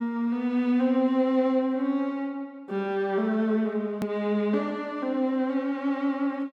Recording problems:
hard cut with a click; at 4 s

